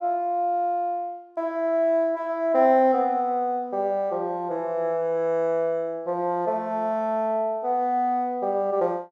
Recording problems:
none

